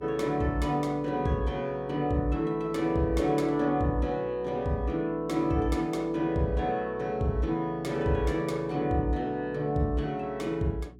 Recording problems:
electrical hum; 60 Hz, harmonics up to 420 Hz, SNR 22 dB

